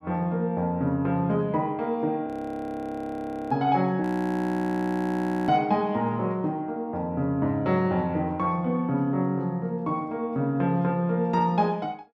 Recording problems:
audio freezing; at 2.5 s for 1 s and at 4 s for 1.5 s

